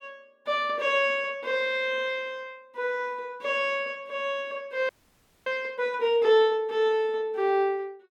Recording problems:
frozen audio; at 5 s for 0.5 s

